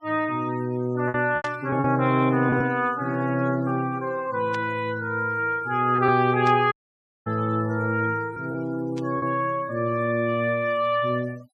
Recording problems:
denoising artefacts; signal-to-artefact ratio 25 dB
packet loss; 3% of the sound replaced, filled with repeated pitch periods
burst of static; 4 times, first at 1.5 s; peak -11 dB vs average level
dropout; at 6.5 s for 0.5 s

